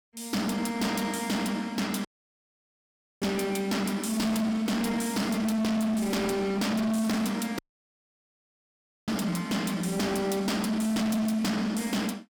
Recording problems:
distortion; hard clipping, signal-to-distortion ratio 8 dB
dropout; at 2 s for 1 s and at 7.5 s for 1.5 s

